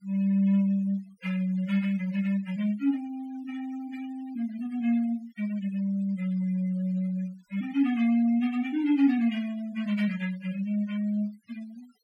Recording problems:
denoising artefacts; signal-to-artefact ratio 22 dB

